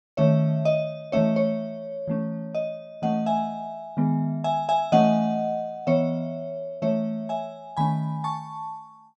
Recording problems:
none

